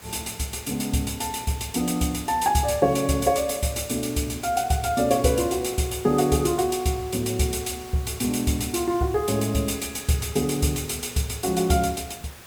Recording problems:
background hiss; slope -3 dB per octave, SNR 19 dB

